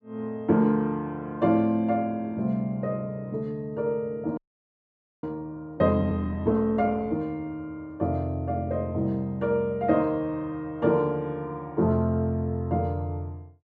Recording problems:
frozen audio; at 4.5 s for 1 s

